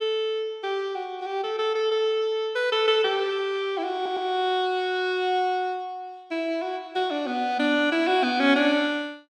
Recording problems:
stutter; at 4 s

